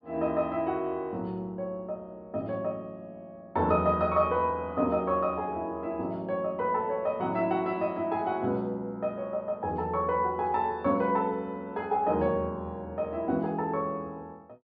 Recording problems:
treble cut off; nothing above 5.5 kHz

